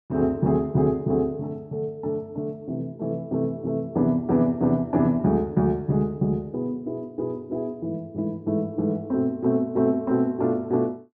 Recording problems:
none

